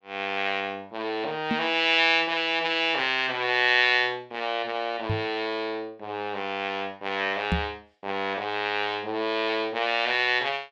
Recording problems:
knock on the microphone; at 1.5 s, at 5 s and at 7.5 s; peak +2 dB vs average level

